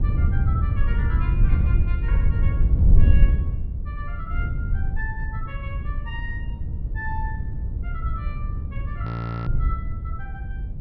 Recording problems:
treble cut off; nothing above 5.5 kHz
wind noise; below 86 Hz, SNR -13 dB
audio freezing; at 9 s

